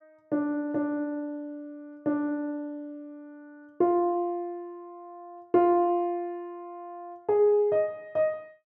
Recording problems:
none

